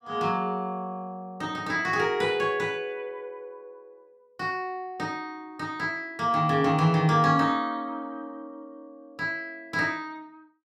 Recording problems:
none

